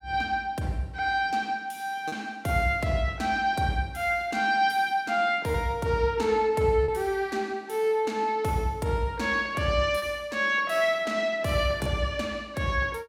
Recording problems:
packet loss; 1.2% of the sound replaced, filled with repeated pitch periods

